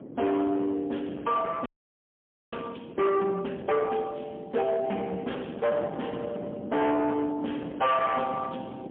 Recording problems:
telephone audio; 320 Hz to 2.9 kHz, AMR-NB, then MP3
distorted audio; hard clipping, signal-to-distortion ratio 9 dB
wind noise; below 600 Hz, SNR 13 dB
frozen audio; at 1.5 s for 1 s

